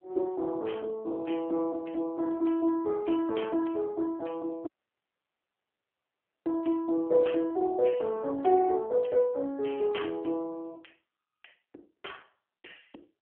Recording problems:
telephone audio; 280 Hz to 3.2 kHz, AMR-NB
dropout; at 4.5 s for 2 s

